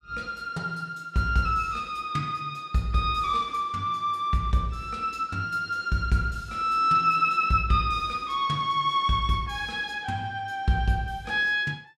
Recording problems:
none

